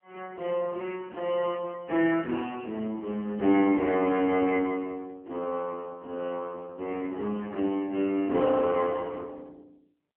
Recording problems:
phone line; 240 Hz to 3.6 kHz, AMR-NB

